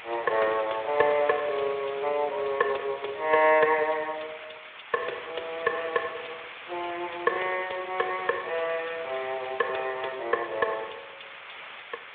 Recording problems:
telephone audio; 340 Hz to 3.6 kHz, Speex
hiss; SNR 13 dB

